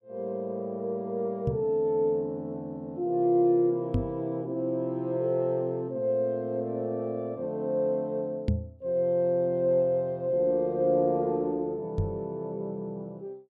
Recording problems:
knock on the microphone; 4 times, first at 1.5 s; peak +5 dB vs average level

